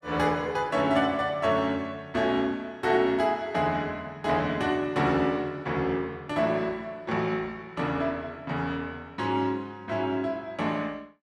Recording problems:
none

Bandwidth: 14.5 kHz